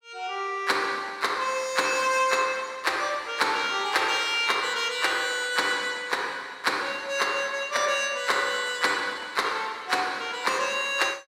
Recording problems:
none

